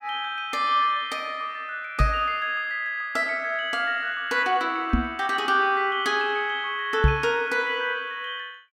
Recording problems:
microphone bump; at 2 s, at 5 s and at 7 s; peak +8 dB vs average level

